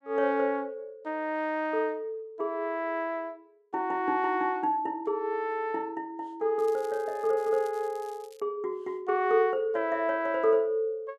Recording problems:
crackling; from 6.5 to 8.5 s; loose cable, SNR 26 dB

